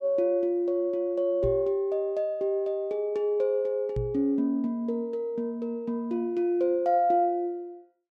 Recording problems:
knock on the microphone; at 1.5 s and at 4 s; peak -1 dB vs average level

